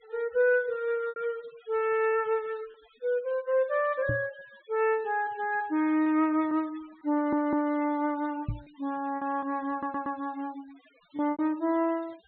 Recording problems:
treble cut off; nothing above 4 kHz
denoising artefacts; signal-to-artefact ratio 25 dB
packet loss; 4% of the sound replaced, filled with repeated pitch periods
knock on the microphone; at 4 s and at 8.5 s; peak 0 dB vs average level
audio stuttering; at 7 s and at 9.5 s

